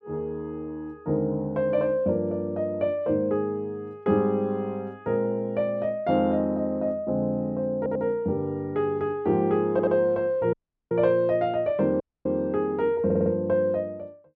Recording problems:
audio stuttering; at 8 s, at 9.5 s and at 13 s
audio cutting out; at 11 s and at 12 s

